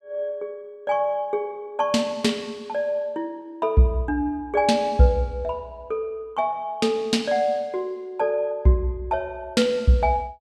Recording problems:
none

